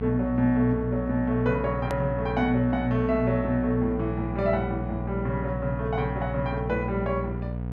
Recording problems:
hum; 60 Hz, harmonics up to 780 Hz, SNR 5 dB
hard cut with a click; at 2 s

